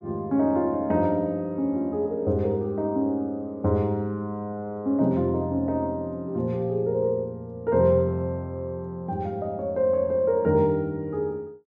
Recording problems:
none

